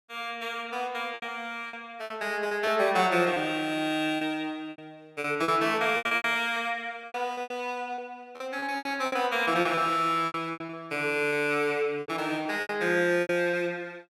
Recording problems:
lost packets; 13% of the sound replaced, filled with repeated pitch periods

